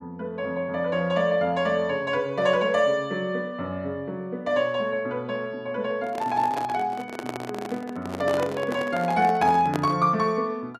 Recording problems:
handling noise; from 6 to 10 s; peak 0 dB vs average level

